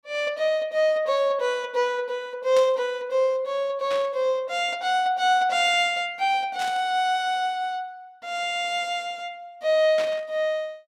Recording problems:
burst of static; 4 times, first at 2.5 s; peak -6 dB vs average level

